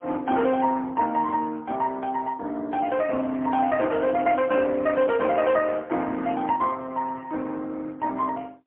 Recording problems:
phone line; 190 Hz to 3.2 kHz, AMR-NB, then MP3

